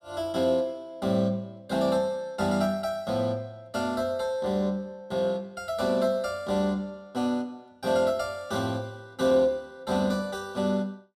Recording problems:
none

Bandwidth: 14.5 kHz